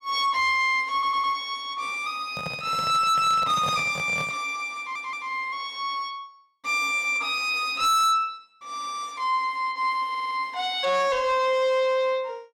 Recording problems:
distorted audio; soft clipping, signal-to-distortion ratio 11 dB
stutter; at 1 s, at 5 s and at 10 s
microphone handling noise; from 2.5 to 4.5 s; peak -5 dB vs average level

